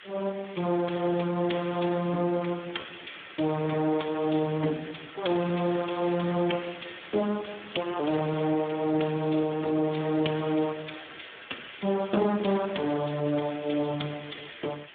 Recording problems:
telephone audio; 190 Hz to 3.5 kHz, Speex
background hiss; SNR 17 dB

